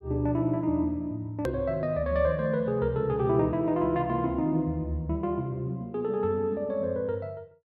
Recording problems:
click at an edit; at 1.5 s

